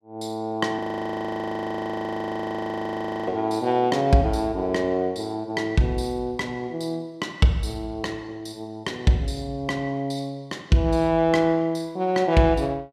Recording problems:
audio freezing; at 1 s for 2.5 s

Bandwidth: 14.5 kHz